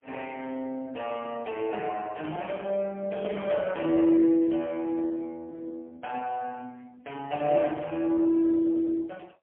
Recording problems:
telephone audio; 260 Hz to 3.1 kHz, AMR-NB, then MP3

